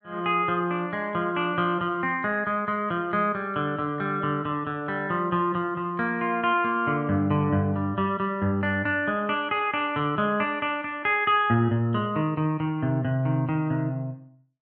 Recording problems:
none

